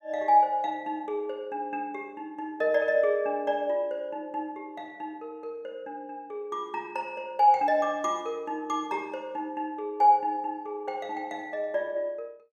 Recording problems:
none

